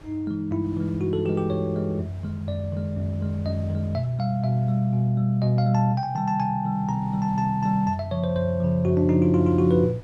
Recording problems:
wind on the microphone; below 580 Hz, SNR 25 dB

